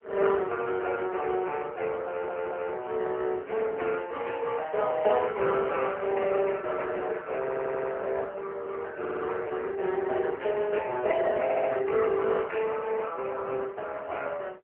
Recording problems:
telephone audio; 320 Hz to 3 kHz, AMR-NB
stutter; 4 times, first at 2 s

